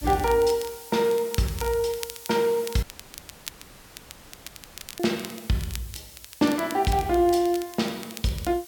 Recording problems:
background hiss; slope +1 dB per octave, SNR 18 dB
crackling; vinyl, SNR 16 dB
dropout; at 3 s for 2 s

